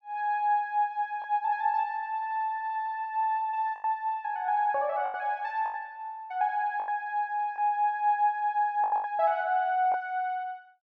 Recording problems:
lost packets; 5% of the sound replaced, filled with the last packet

